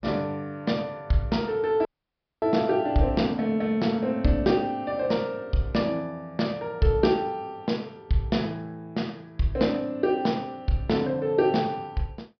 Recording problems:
low-pass filter; nothing above 5.5 kHz
audio cutting out; at 2 s for 0.5 s

